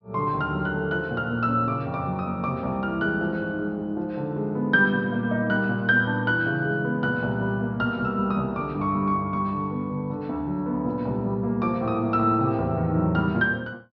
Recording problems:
low-pass filter; nothing above 5.9 kHz

